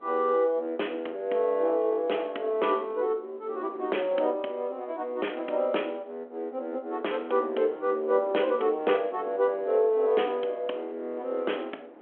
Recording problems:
telephone audio; 260 Hz to 3.3 kHz, G.726
wind on the microphone; below 680 Hz, SNR 21 dB

